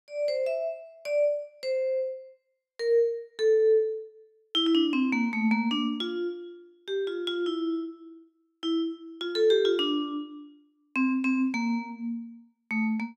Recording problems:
none

